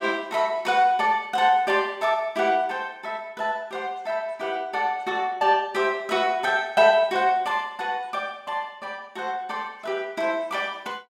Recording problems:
none

